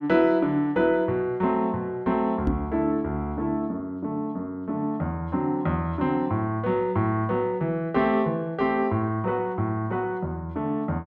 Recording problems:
microphone bump; at 2.5 s; peak +3 dB vs average level

